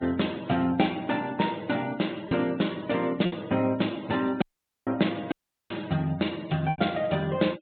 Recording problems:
low-pass filter; nothing above 4 kHz
denoising artefacts; signal-to-artefact ratio 22 dB
packet loss; 2% of the sound replaced, filled with repeated pitch periods
dropout; at 4.5 s and at 5.5 s

